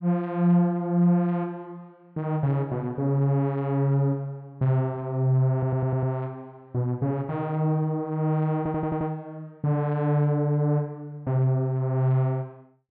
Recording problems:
treble missing; nothing above 5.5 kHz
stutter; at 5.5 s and at 8.5 s

